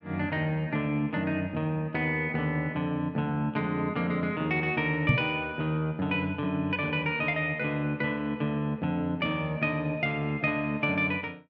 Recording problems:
microphone thump; at 5 s; peak +8 dB vs average level

